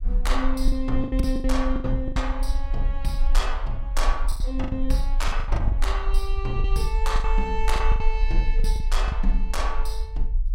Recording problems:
low-frequency rumble; below 44 Hz, strongest tone 22 Hz, SNR -2 dB
lost packets; 11% of the sound replaced, filled with the last packet

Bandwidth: 16 kHz